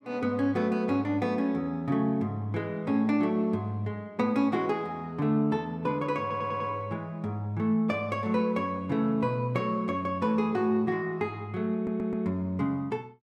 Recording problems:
audio stuttering; at 6 s and at 12 s

